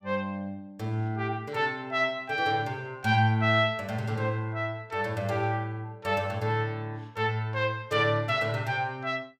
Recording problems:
none

